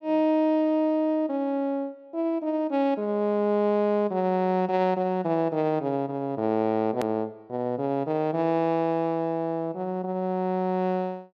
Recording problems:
hard cut with a click; at 7 s

